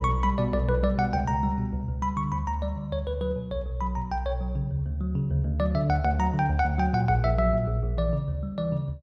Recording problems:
none

